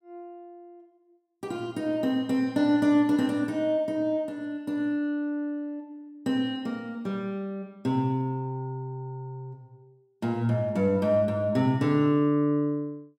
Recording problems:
none

